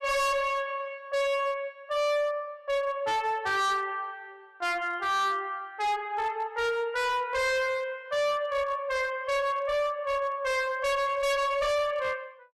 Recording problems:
distorted audio; hard clipping, signal-to-distortion ratio 6 dB

